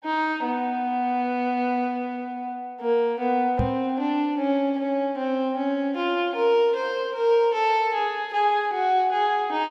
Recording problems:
microphone bump; at 3.5 s; peak +2 dB vs average level

